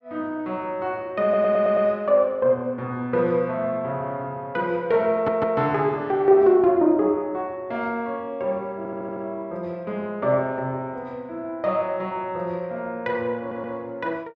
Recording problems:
stutter; 4 times, first at 1 s

